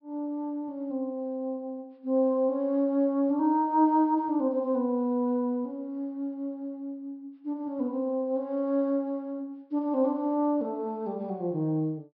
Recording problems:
low-pass filter; nothing above 5.5 kHz

